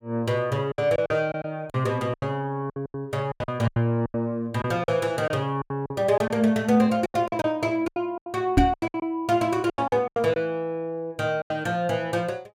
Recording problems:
packet loss; 14% of the sound replaced, filled with silence
microphone thump; at 8.5 s; peak +9 dB vs average level

